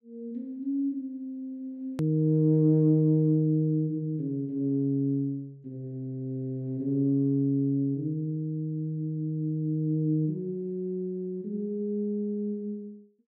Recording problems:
hard cut with a click; at 2 s

